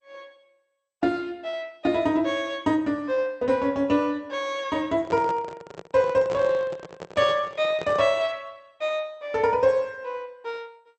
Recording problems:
codec artefacts; MP2, log-spectral distance 2 dB
handling noise; from 5 to 8 s; peak -4 dB vs average level

